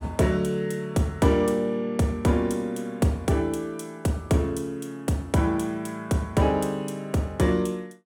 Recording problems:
none

